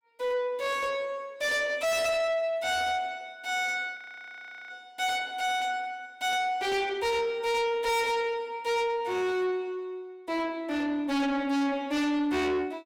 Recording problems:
distortion; soft clipping, signal-to-distortion ratio 7 dB
frozen audio; at 4 s for 0.5 s

